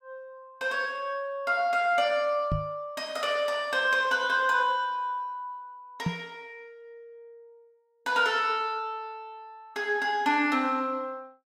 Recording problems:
microphone thump; at 2.5 s and at 6 s; peak +2 dB vs average level

